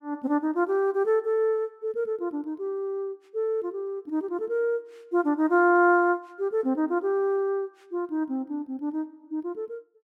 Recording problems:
none

